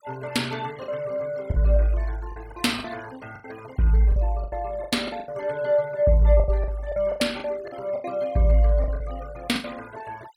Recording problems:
denoising artefacts; signal-to-artefact ratio 22 dB
lost packets; 11% of the sound replaced, filled with the last packet

